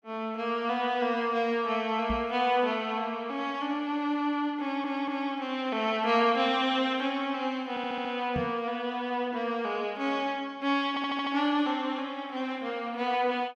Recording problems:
microphone bump; at 2 s and at 8.5 s; peak -2 dB vs average level
stutter; at 4.5 s, at 7.5 s and at 11 s

